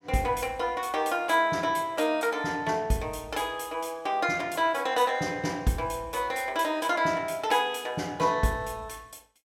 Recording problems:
none

